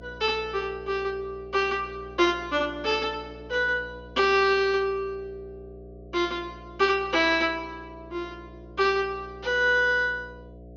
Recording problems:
low-pass filter; nothing above 6.9 kHz
hum; 60 Hz, harmonics up to 720 Hz, SNR 21 dB

